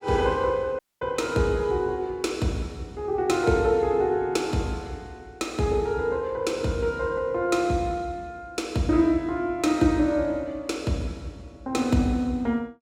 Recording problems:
audio cutting out; at 1 s

